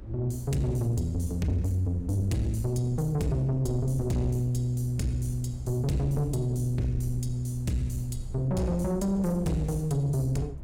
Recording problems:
distorted audio; soft clipping, signal-to-distortion ratio 11 dB
low-frequency rumble; below 76 Hz, SNR 13 dB
wind noise; below 280 Hz, SNR 20 dB

